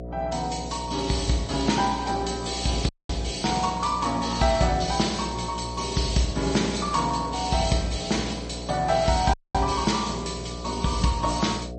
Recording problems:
lossy compression; MP3, log-spectral distance 5 dB, nothing above 8.2 kHz
hum; 60 Hz, harmonics up to 720 Hz, SNR 11 dB
dropout; at 3 s and at 9.5 s

